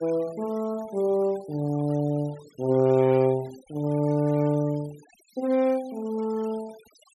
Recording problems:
denoising artefacts; signal-to-artefact ratio 23 dB

